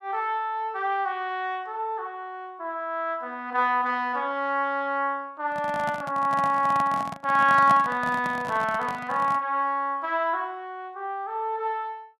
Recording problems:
handling noise; from 5.5 to 9.5 s; peak +1 dB vs average level

